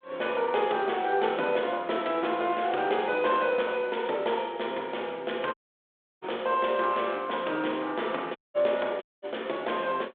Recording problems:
phone line; 280 Hz to 3.6 kHz, G.726
crackle; at 2.5 s; loose cable, SNR 27 dB
audio cutting out; at 5.5 s for 0.5 s, at 8.5 s and at 9 s

